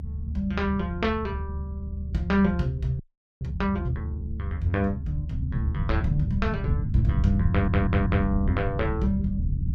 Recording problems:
rumble; below 130 Hz, SNR 2 dB
frozen audio; at 3 s
stutter; at 7.5 s

